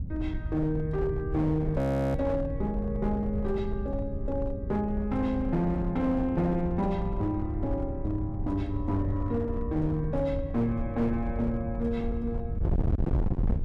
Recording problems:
distorted audio; hard clipping, signal-to-distortion ratio 7 dB
wind on the microphone; below 120 Hz, SNR 4 dB
audio freezing; at 2 s

